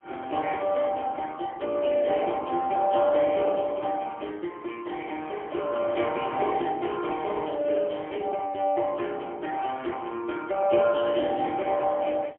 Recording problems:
phone line; 280 Hz to 2.9 kHz, AMR-NB, then MP3
static burst; at 2 s, at 4 s and at 7 s; peak -17 dB vs average level

